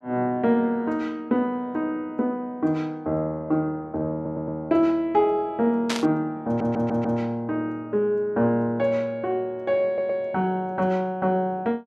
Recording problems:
audio stuttering; at 4 s, at 6.5 s and at 10 s
static burst; at 6 s; peak +1 dB vs average level

